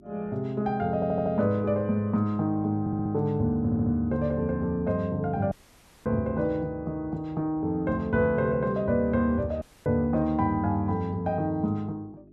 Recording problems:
hum; 50 Hz, harmonics up to 400 Hz, SNR 27 dB
audio stuttering; at 1 s, at 3 s and at 3.5 s
dropout; at 5.5 s for 0.5 s and at 9.5 s

